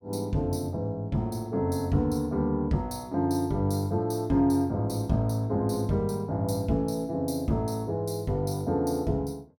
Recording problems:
none

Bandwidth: 17.5 kHz